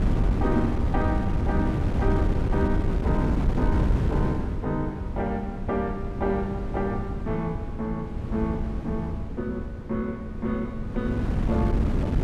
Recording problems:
wind on the microphone; below 190 Hz, SNR -2 dB

